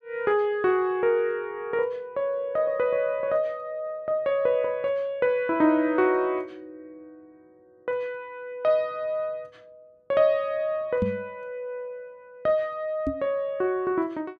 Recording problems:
microphone thump; at 11 s and at 13 s; peak +2 dB vs average level

